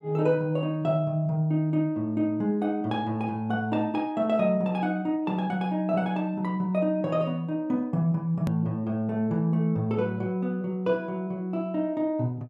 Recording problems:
hard cut with a click; at 8.5 s

